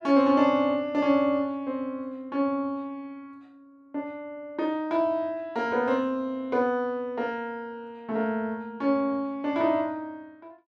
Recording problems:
none

